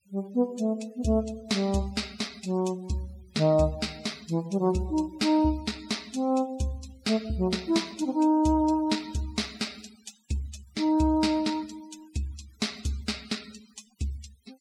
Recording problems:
denoising artefacts; signal-to-artefact ratio 22 dB

